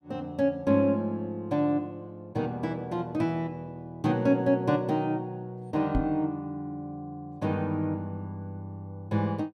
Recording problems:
knock on the microphone; at 6 s; peak +5 dB vs average level

